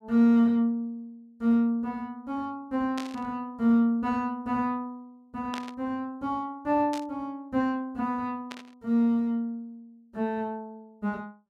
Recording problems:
burst of static; 4 times, first at 3 s; peak -6 dB vs average level

